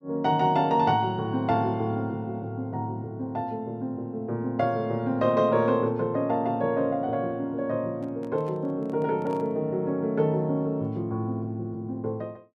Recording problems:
handling noise; from 8 to 9.5 s; peak -12 dB vs average level

